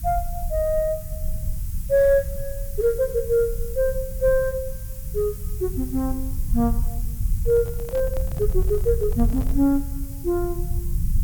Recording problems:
background hiss; slope +1 dB per octave, SNR 16 dB
rumble; below 68 Hz, SNR 6 dB
microphone handling noise; from 7.5 to 9.5 s; peak -12 dB vs average level

